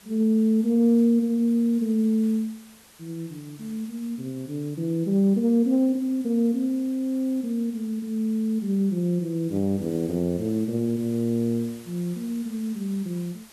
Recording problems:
background hiss; slope -1 dB per octave, SNR 25 dB

